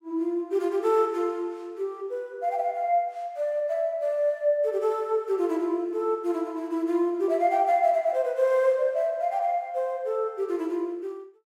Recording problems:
none

